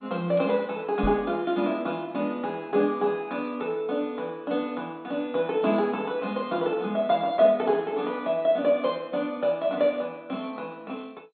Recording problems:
codec artefacts; MP2, log-spectral distance 2 dB, nothing above 3.6 kHz
knock on the microphone; at 1 s; peak -2 dB vs average level

